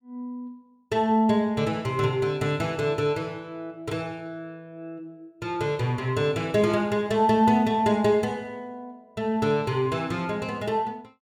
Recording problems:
none

